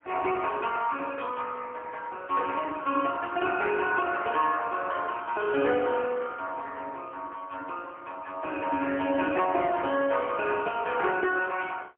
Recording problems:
telephone audio; 320 Hz to 3.2 kHz, AMR-NB, then MP3

